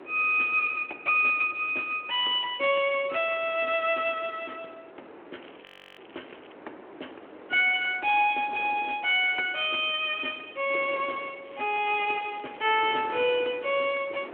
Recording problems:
telephone audio; 300 Hz to 3.3 kHz, Speex
wind noise; below 980 Hz, SNR 20 dB
crackling; from 5.5 to 6.5 s and from 11 to 13 s; loose cable, SNR 27 dB
frozen audio; at 5.5 s

